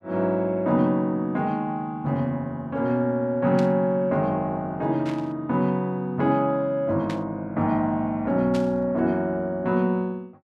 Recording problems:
burst of static; 4 times, first at 3.5 s; peak -9 dB vs average level

